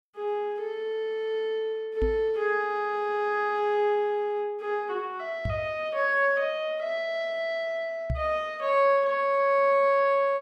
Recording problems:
microphone bump; at 2 s, at 5.5 s and at 8 s; peak +1 dB vs average level

